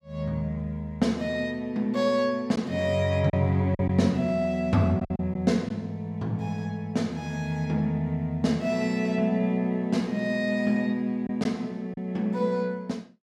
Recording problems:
packet loss; 2% of the sound replaced, filled with silence

